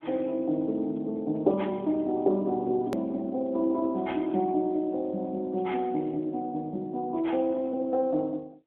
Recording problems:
phone line; 220 Hz to 3.7 kHz, AMR-NB
hard cut with a click; at 3 s

